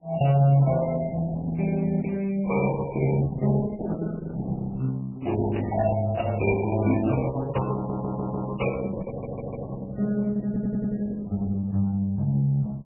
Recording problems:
lossy codec; Opus, then MP3, log-spectral distance 3 dB, nothing above 2.4 kHz
crackle; at 5.5 s; loose cable, SNR 19 dB
audio stuttering; at 8 s, at 9 s and at 10 s

